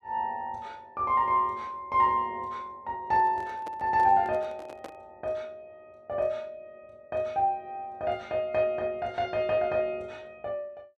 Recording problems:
handling noise; from 3 to 5 s; peak -8 dB vs average level

